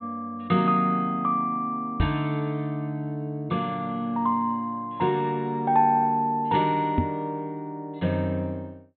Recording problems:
treble missing; nothing above 4 kHz
microphone bump; at 2 s and at 7 s; peak +5 dB vs average level

